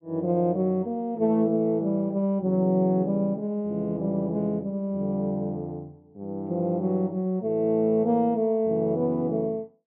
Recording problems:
treble missing; nothing above 4 kHz

